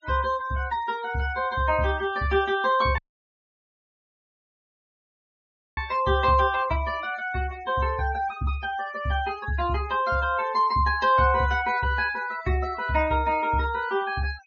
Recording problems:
treble cut off; nothing above 7 kHz
denoising artefacts; signal-to-artefact ratio 21 dB
audio cutting out; at 3 s for 3 s

